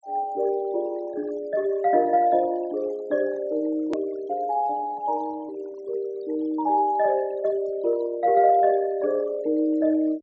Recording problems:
treble cut off; nothing above 8 kHz
denoising artefacts; signal-to-artefact ratio 26 dB
click at an edit; at 4 s

